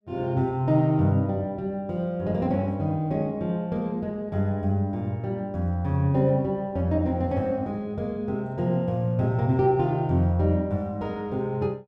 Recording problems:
none

